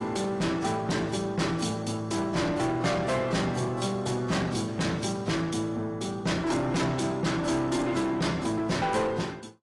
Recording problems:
lossy compression; AAC, log-spectral distance 4 dB, nothing above 10.7 kHz
distortion; soft clipping, signal-to-distortion ratio 7 dB

